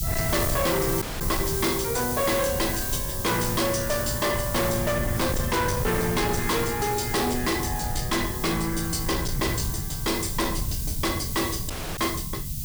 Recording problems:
distortion; hard clipping, signal-to-distortion ratio 6 dB
hiss; SNR 5 dB
rumble; below 150 Hz, SNR 7 dB
audio cutting out; at 1 s and at 12 s

